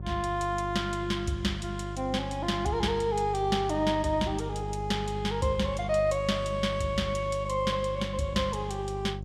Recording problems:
electrical hum; 50 Hz, harmonics up to 550 Hz, SNR 8 dB

